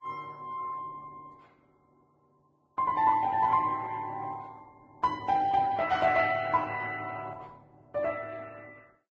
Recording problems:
codec artefacts; Opus, then Vorbis, log-spectral distance 3 dB

